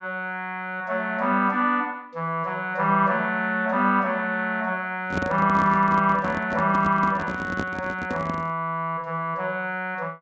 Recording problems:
treble missing; nothing above 8 kHz
microphone handling noise; from 5 to 8.5 s; peak -1 dB vs average level

